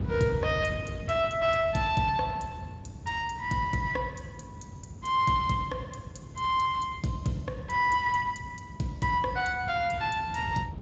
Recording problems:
codec artefacts; Speex, log-spectral distance 3 dB, nothing above 7.3 kHz
low-frequency rumble; below 190 Hz, SNR 12 dB

